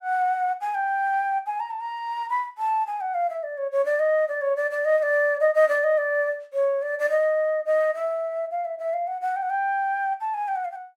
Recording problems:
none

